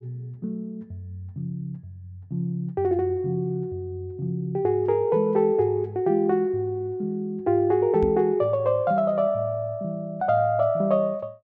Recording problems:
knock on the microphone; at 8 s; peak -2 dB vs average level

